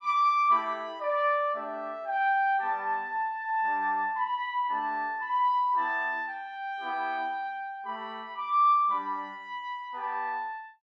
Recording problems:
none

